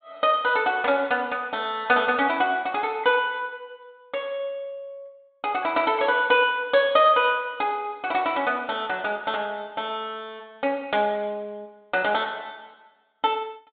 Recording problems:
treble cut off; nothing above 4 kHz

